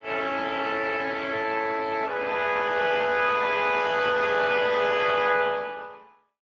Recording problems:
lossy compression; Speex, log-spectral distance 5 dB

